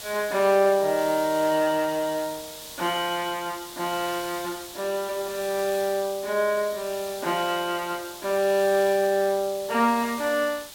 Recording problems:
background hiss; SNR 13 dB

